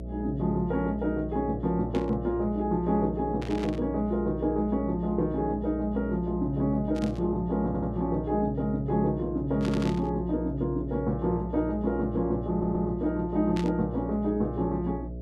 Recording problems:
hum; 60 Hz, harmonics up to 660 Hz, SNR 10 dB
burst of static; 5 times, first at 2 s; peak -7 dB vs average level
stutter; at 7.5 s, at 9.5 s and at 13 s

